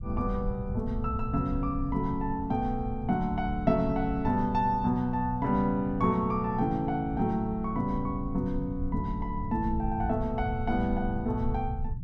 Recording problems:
low-frequency rumble; below 92 Hz, SNR 8 dB

